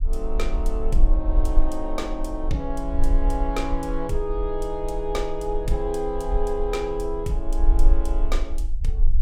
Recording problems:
low-frequency rumble; below 38 Hz, strongest tone 16 Hz, SNR -1 dB

